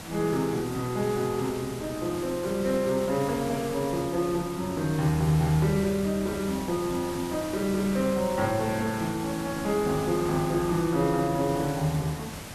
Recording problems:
hiss; slope -3 dB per octave, SNR 11 dB

